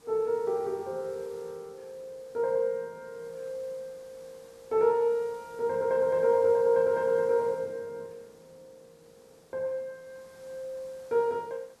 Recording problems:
background hiss; SNR 28 dB

